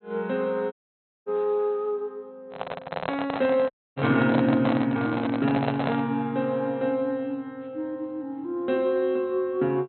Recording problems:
treble cut off; nothing above 4.1 kHz
dropout; at 0.5 s for 0.5 s and at 3.5 s
microphone handling noise; from 2.5 to 6 s; peak +2 dB vs average level

